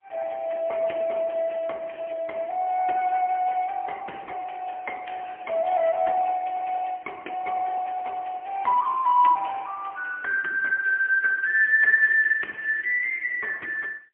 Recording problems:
phone line; 370 Hz to 2.7 kHz, AMR-NB, then MP3

